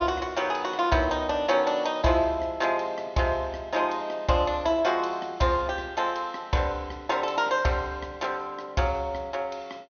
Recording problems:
low-pass filter; nothing above 6.3 kHz

